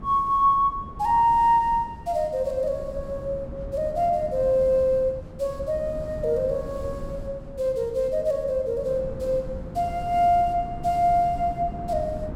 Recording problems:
wind on the microphone; below 240 Hz, SNR 14 dB

